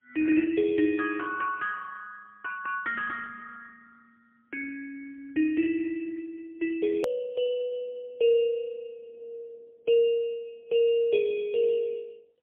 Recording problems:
telephone audio; 280 Hz to 3.3 kHz, AMR-NB, then MP3
hard cut with a click; at 7 s

